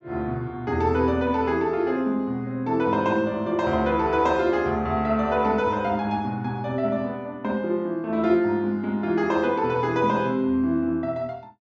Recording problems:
low-pass filter; nothing above 8 kHz

